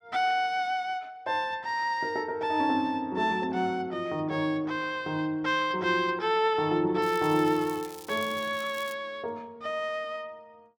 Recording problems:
crackling; from 7 to 9 s; loose cable, SNR 18 dB

